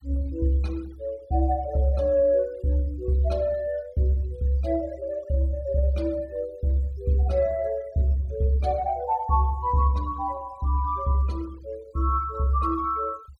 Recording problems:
denoising artefacts; signal-to-artefact ratio 27 dB

